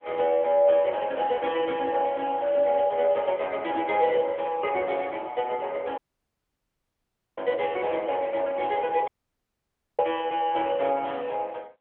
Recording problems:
phone line; 340 Hz to 3.3 kHz, AMR-NB
dropout; at 6 s for 1.5 s and at 9 s for 1 s

